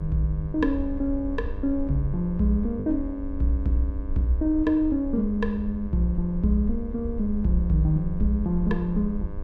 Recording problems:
hum; 50 Hz, harmonics up to 1.6 kHz, SNR 18 dB
low-frequency rumble; below 68 Hz, strongest tone 20 Hz, SNR 10 dB
packet loss; 0.9% of the sound replaced, filled with the last packet

